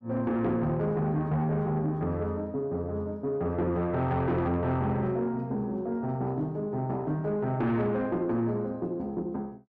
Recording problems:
distorted audio; soft clipping, signal-to-distortion ratio 12 dB

